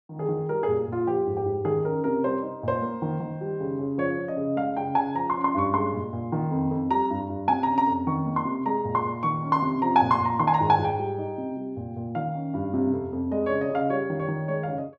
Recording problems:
none

